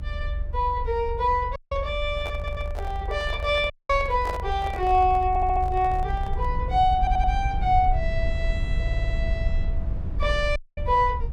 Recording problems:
rumble; below 72 Hz, SNR 5 dB
dropout; at 1.5 s, at 3.5 s and at 11 s
handling noise; from 2 to 6.5 s; peak -5 dB vs average level
audio stuttering; 4 times, first at 2.5 s

